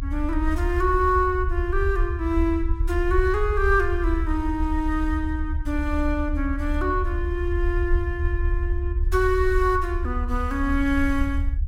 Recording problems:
low-frequency rumble; below 70 Hz, strongest tone 34 Hz, SNR 2 dB

